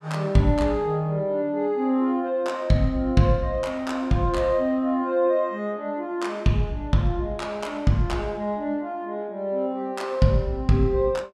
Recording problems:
none

